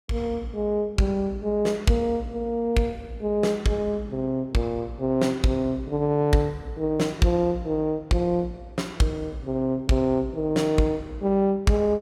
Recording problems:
none

